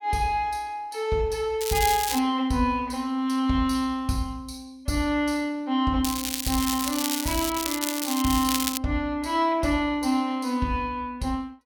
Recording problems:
crackling; at 1.5 s and from 6 to 9 s; loose cable, SNR 3 dB

